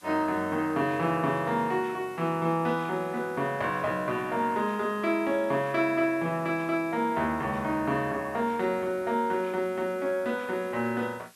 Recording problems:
hiss; slope +1 dB per octave, SNR 27 dB

